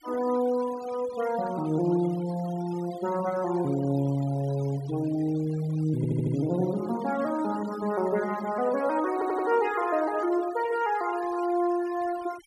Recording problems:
noise reduction artefacts; signal-to-artefact ratio 18 dB
stutter; at 6 s and at 9 s

